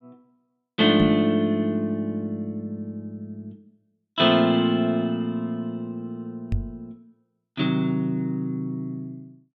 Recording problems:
microphone thump; at 1 s and at 6.5 s; peak +2 dB vs average level

